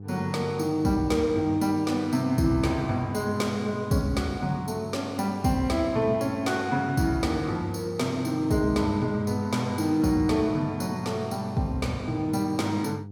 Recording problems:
electrical hum; 50 Hz, harmonics up to 500 Hz, SNR 15 dB

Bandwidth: 17 kHz